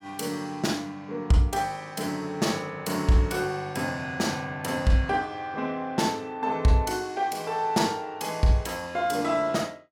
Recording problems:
none

